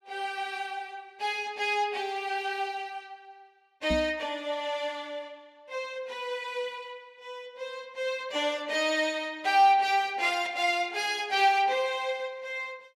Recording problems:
microphone bump; at 4 s; peak -1 dB vs average level

